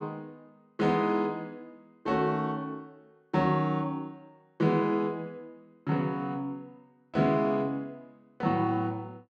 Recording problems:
none

